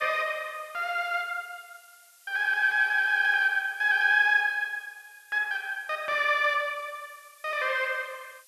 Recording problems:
hiss; slope +4 dB per octave, SNR 29 dB

